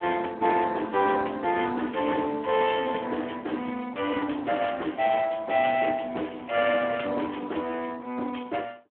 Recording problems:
phone line; 220 Hz to 3.1 kHz, Speex

